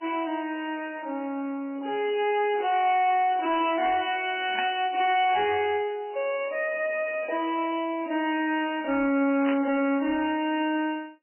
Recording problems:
lossy compression; MP3, log-spectral distance 4 dB, nothing above 2.6 kHz
distorted audio; soft clipping, signal-to-distortion ratio 10 dB
static burst; at 4.5 s and at 9.5 s; peak -1 dB vs average level

